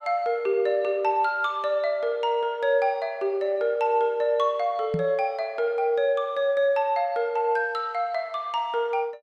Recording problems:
knock on the microphone; at 5 s; peak -1 dB vs average level

